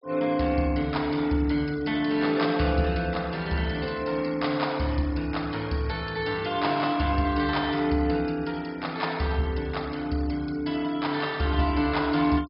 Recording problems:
treble missing; nothing above 5.5 kHz
denoising artefacts; signal-to-artefact ratio 23 dB

